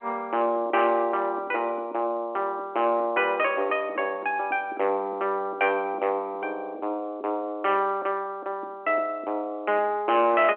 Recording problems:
telephone audio; 260 Hz to 3.3 kHz, G.711
distorted audio; soft clipping, signal-to-distortion ratio 11 dB

